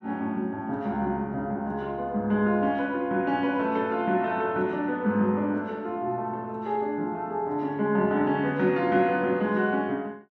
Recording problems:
none

